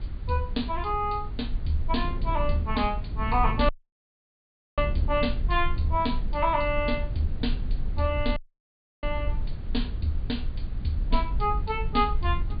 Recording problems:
treble missing; nothing above 4.8 kHz
hiss; SNR 27 dB
rumble; below 56 Hz, SNR 4 dB
wind on the microphone; below 220 Hz, SNR 13 dB
audio cutting out; at 3.5 s for 1 s and at 8.5 s for 0.5 s

